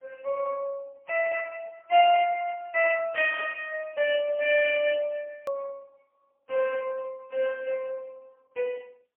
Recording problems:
phone line; 240 Hz to 2.6 kHz, AMR-NB, then MP3
edit click; at 5.5 s

